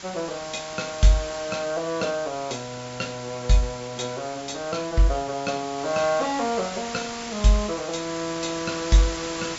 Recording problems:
low-pass filter; nothing above 7.6 kHz
background hiss; slope 0 dB per octave, SNR 10 dB

